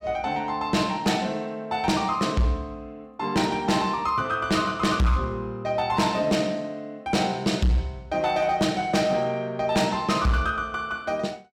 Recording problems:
distortion; hard clipping, signal-to-distortion ratio 11 dB

